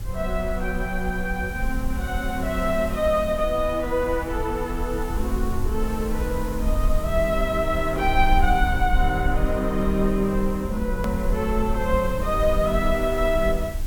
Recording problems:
background hiss; slope -3 dB per octave, SNR 17 dB
low-frequency rumble; below 58 Hz, SNR 5 dB
hard cut with a click; at 11 s

